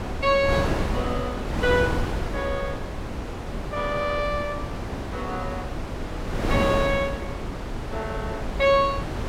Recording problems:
wind noise; below 590 Hz, SNR 4 dB

